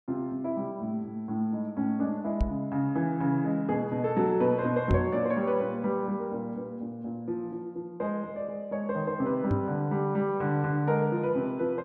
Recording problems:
microphone bump; at 2.5 s, at 5 s and at 9.5 s; peak +6 dB vs average level

